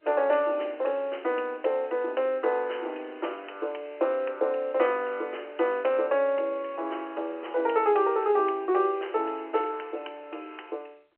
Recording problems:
telephone audio; 300 Hz to 3.1 kHz, G.711

